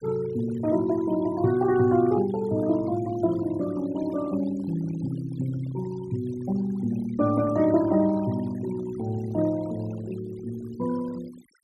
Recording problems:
noise reduction artefacts; signal-to-artefact ratio 20 dB

